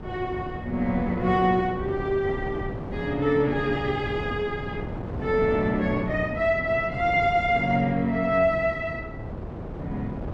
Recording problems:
wind noise; below 420 Hz, SNR 9 dB

